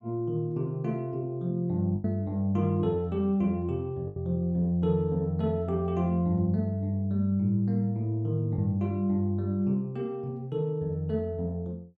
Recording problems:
lost packets; 1.5% of the sound replaced, filled with the last packet

